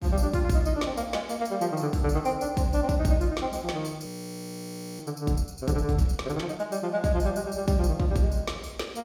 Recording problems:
audio freezing; at 4 s for 1 s

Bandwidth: 18 kHz